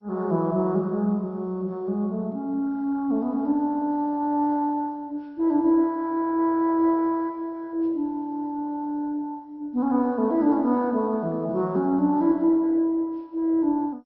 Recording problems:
lossy codec; MP2, log-spectral distance 2 dB

